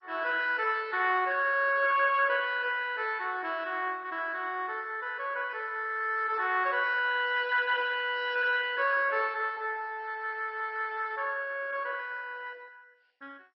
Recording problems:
lossy compression; MP2, log-spectral distance 4 dB, nothing above 5.3 kHz

